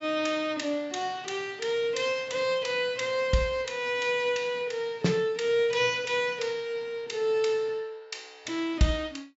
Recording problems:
treble cut off; nothing above 8 kHz

